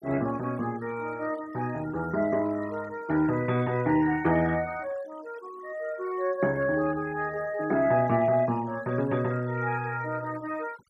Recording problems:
denoising artefacts; signal-to-artefact ratio 22 dB

